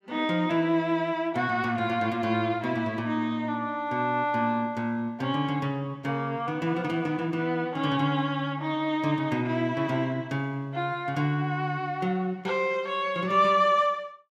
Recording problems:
none

